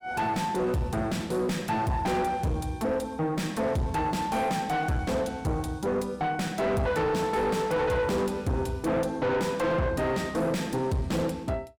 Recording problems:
distortion; soft clipping, signal-to-distortion ratio 6 dB

